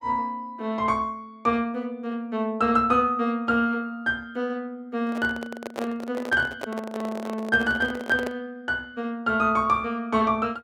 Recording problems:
microphone handling noise; from 5 to 8.5 s; peak -2 dB vs average level

